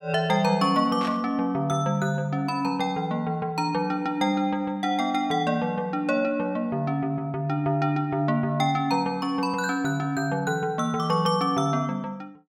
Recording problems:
static burst; at 1 s; peak -7 dB vs average level

